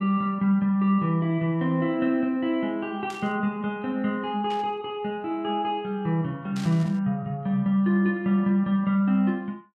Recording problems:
static burst; at 3 s, at 4.5 s and at 6.5 s; peak -11 dB vs average level

